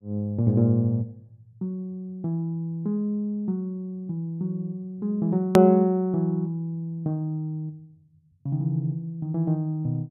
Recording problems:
hard cut with a click; at 5.5 s

